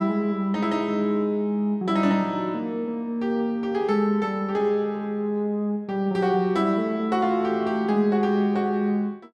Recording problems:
none

